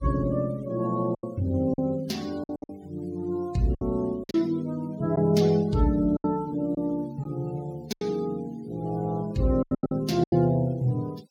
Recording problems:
noise reduction artefacts; signal-to-artefact ratio 24 dB
packet loss; 8% of the sound replaced, filled with silence

